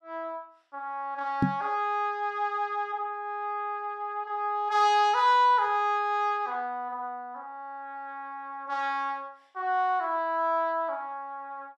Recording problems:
knock on the microphone; at 1.5 s; peak +7 dB vs average level

